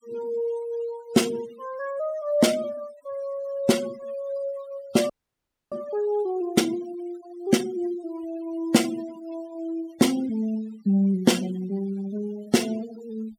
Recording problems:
denoising artefacts; signal-to-artefact ratio 17 dB
audio freezing; at 5 s for 0.5 s

